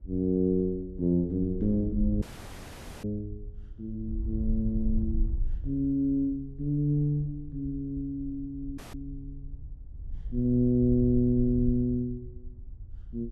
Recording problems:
wind noise; below 58 Hz, SNR 10 dB
audio cutting out; at 2 s for 1 s and at 9 s

